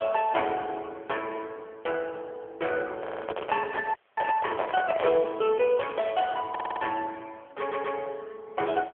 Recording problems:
telephone audio; 340 Hz to 3.3 kHz, AMR-NB
handling noise; from 3 to 5 s; peak +4 dB vs average level
stutter; at 3 s, at 6.5 s and at 7.5 s
frozen audio; at 4 s

